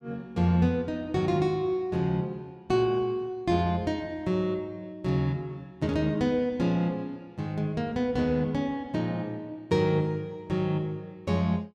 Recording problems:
none

